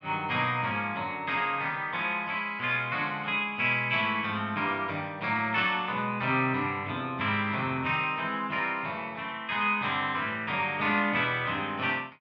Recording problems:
none

